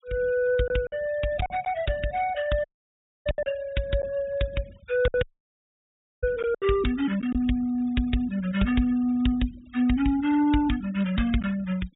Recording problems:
low-pass filter; nothing above 4 kHz
noise reduction artefacts; signal-to-artefact ratio 22 dB
packet loss; 4% of the sound replaced, filled with silence
dropout; at 2.5 s for 0.5 s and at 5 s for 1 s

